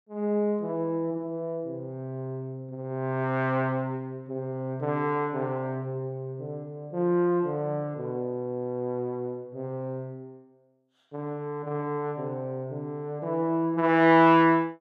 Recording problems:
none

